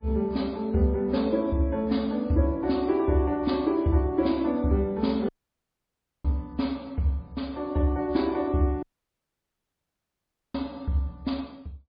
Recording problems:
lossy compression; MP3, log-spectral distance 2 dB, nothing above 4.8 kHz
audio cutting out; at 5.5 s for 1 s and at 9 s for 1.5 s

